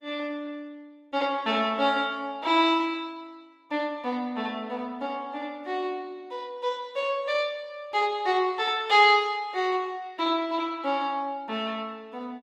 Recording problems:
lossy codec; Opus, log-spectral distance 2 dB

